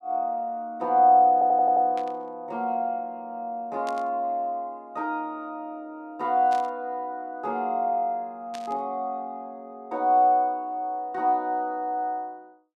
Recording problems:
stutter; at 1.5 s
static burst; 4 times, first at 2 s; peak -12 dB vs average level

